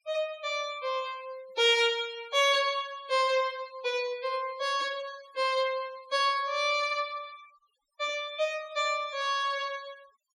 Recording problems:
denoising artefacts; signal-to-artefact ratio 23 dB

